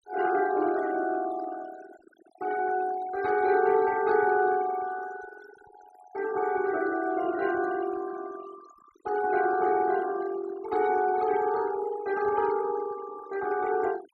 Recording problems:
denoising artefacts; signal-to-artefact ratio 16 dB

